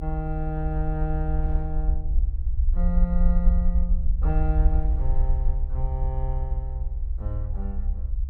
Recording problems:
rumble; below 64 Hz, SNR -6 dB
wind noise; below 770 Hz, SNR 26 dB

